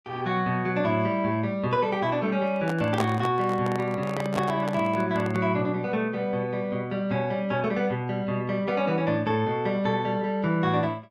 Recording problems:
microphone handling noise; from 2.5 to 5.5 s; peak +2 dB vs average level

